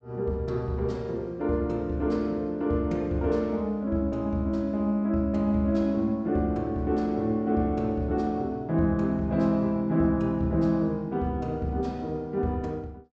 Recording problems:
treble missing; nothing above 8 kHz

